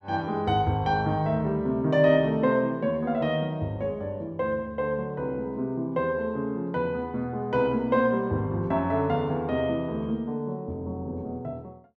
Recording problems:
none

